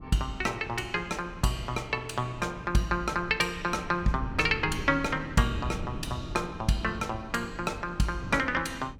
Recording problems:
wind on the microphone; below 210 Hz, SNR 13 dB

